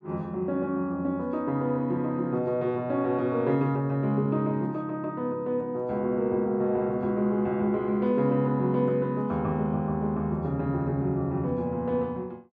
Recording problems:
none

